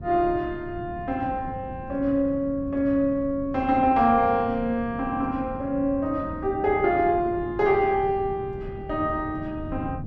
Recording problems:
wind noise; below 210 Hz, SNR 14 dB

